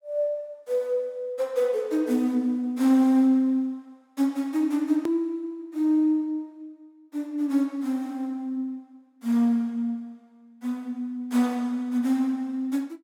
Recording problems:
hard cut with a click; at 5 s

